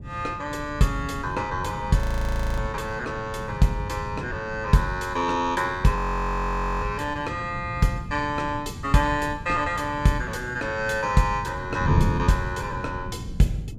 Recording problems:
wind on the microphone; below 170 Hz, SNR 8 dB
frozen audio; at 2 s for 0.5 s and at 6 s for 1 s

